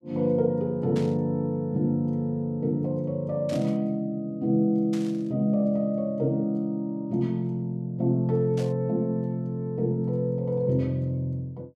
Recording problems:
static burst; 4 times, first at 1 s; peak -11 dB vs average level

